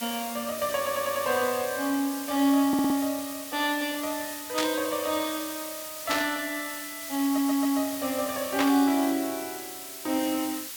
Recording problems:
background hiss; slope +3 dB per octave, SNR 8 dB
audio stuttering; at 1 s, at 2.5 s and at 7 s
burst of static; at 4.5 s, at 6 s and at 8.5 s; peak +3 dB vs average level

